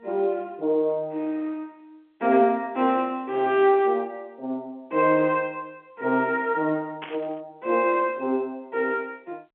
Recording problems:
telephone audio; 260 Hz to 3.4 kHz, G.711
burst of static; at 7 s; peak -8 dB vs average level

